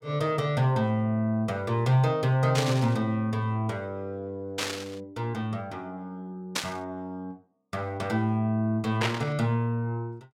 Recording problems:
burst of static; 4 times, first at 2.5 s; peak +4 dB vs average level

